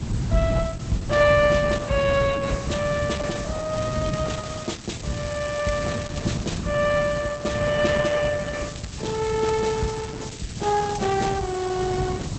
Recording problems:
lossy codec; Opus, log-spectral distance 8 dB, nothing above 8 kHz
background hiss; slope +5 dB per octave, SNR 16 dB
low-frequency rumble; below 170 Hz, SNR 6 dB
crackling; from 3.5 to 6.5 s and from 8.5 to 11 s; loose cable, SNR 18 dB

